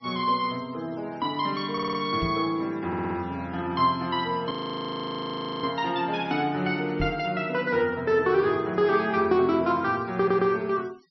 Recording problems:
treble cut off; nothing above 5.8 kHz
noise reduction artefacts; signal-to-artefact ratio 26 dB
stutter; at 1.5 s, at 3 s and at 10 s
microphone thump; at 2 s and at 7 s; peak -1 dB vs average level
audio freezing; at 4.5 s for 1 s

